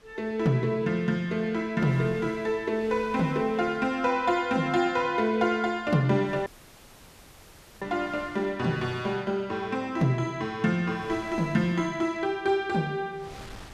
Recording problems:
wind noise; below 2.3 kHz, SNR 24 dB
dropout; at 6.5 s for 1.5 s

